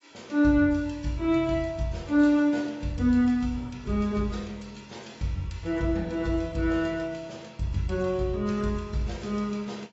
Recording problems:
codec artefacts; AAC, log-spectral distance 3 dB, nothing above 7.6 kHz

